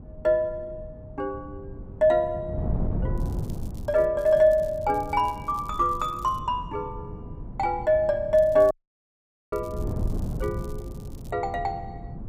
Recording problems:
wind noise; below 170 Hz, SNR 11 dB
crackle; at 3 s, from 4 to 6.5 s and from 8.5 to 11 s; loose cable, SNR 29 dB
audio cutting out; at 8.5 s for 1 s

